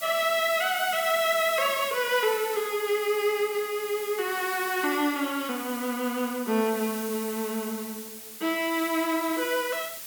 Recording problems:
hiss; slope +1 dB per octave, SNR 10 dB

